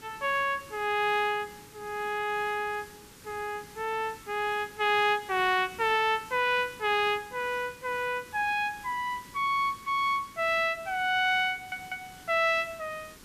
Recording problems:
hiss; SNR 21 dB
stutter; at 12 s

